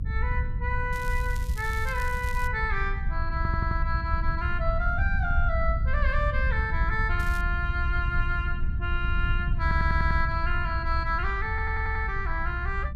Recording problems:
low-frequency rumble; below 68 Hz, SNR 4 dB
wind on the microphone; below 78 Hz, SNR 2 dB
crackle; from 1 to 2.5 s and at 7 s; loose cable, SNR 17 dB
audio stuttering; at 3.5 s, at 9.5 s and at 11 s

